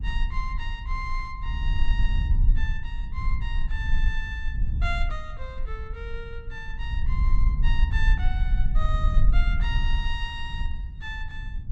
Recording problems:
rumble; below 52 Hz, SNR -8 dB

